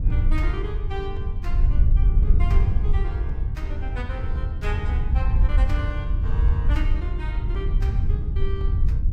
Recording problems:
wind noise; below 74 Hz, SNR -11 dB

